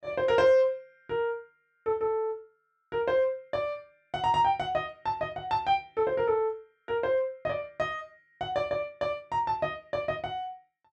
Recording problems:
none

